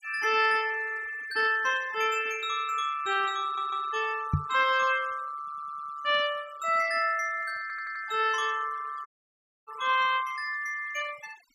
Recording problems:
noise reduction artefacts; signal-to-artefact ratio 19 dB
stutter; at 3.5 s, at 5.5 s and at 7.5 s
microphone bump; at 4.5 s; peak +5 dB vs average level
dropout; at 9 s for 0.5 s

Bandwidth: 15 kHz